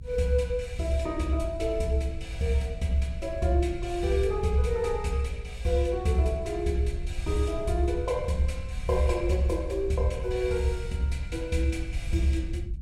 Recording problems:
low-frequency rumble; below 72 Hz, SNR 9 dB

